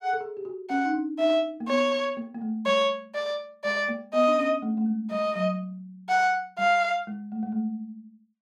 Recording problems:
none

